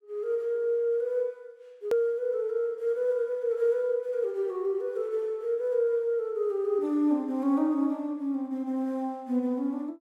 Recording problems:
hard cut with a click; at 2 s

